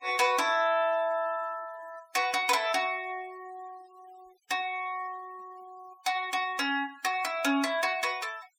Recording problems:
noise reduction artefacts; signal-to-artefact ratio 23 dB

